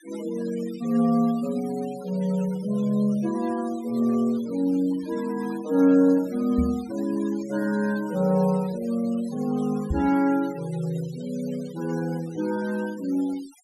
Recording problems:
noise reduction artefacts; signal-to-artefact ratio 21 dB
microphone bump; at 6.5 s and at 10 s; peak +2 dB vs average level

